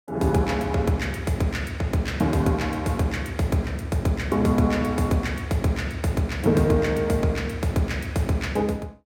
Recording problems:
none

